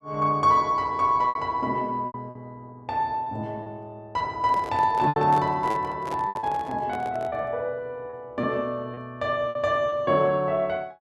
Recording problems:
lost packets; 7% of the sound replaced, filled with repeated pitch periods
handling noise; from 4.5 to 7.5 s; peak -5 dB vs average level

